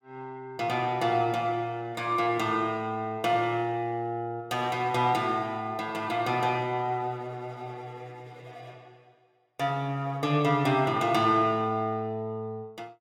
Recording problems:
none

